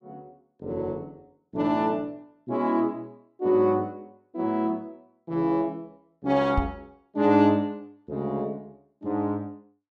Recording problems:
knock on the microphone; at 6.5 s; peak +4 dB vs average level

